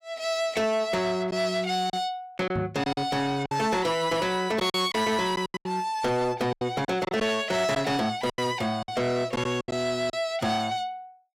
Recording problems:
distorted audio; soft clipping, signal-to-distortion ratio 11 dB
packet loss; 8% of the sound replaced, filled with silence
knock on the microphone; at 2.5 s; peak 0 dB vs average level

